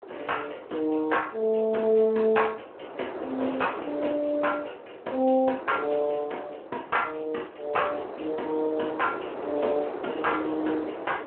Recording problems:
phone line; 280 Hz to 3 kHz, Speex
wind noise; below 790 Hz, SNR 11 dB

